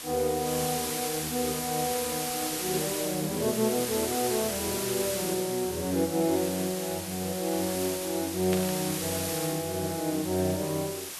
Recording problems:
hiss; slope +1 dB per octave, SNR 3 dB
burst of static; at 8.5 s; peak -2 dB vs average level

